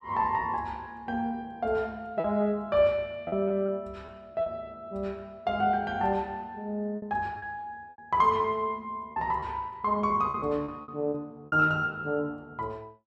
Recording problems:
packet loss; 6% of the sound replaced, filled with repeated pitch periods

